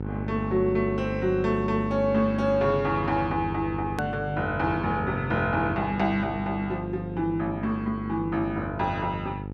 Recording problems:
electrical hum; 50 Hz, harmonics up to 950 Hz, SNR 8 dB
click at an edit; at 4 s

